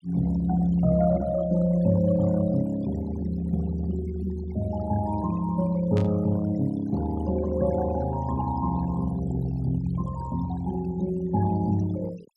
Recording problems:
denoising artefacts; signal-to-artefact ratio 18 dB
static burst; at 6 s; peak -11 dB vs average level

